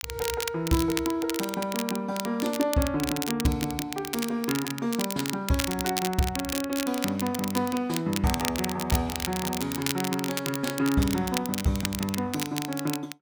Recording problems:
crackle; vinyl, SNR 5 dB

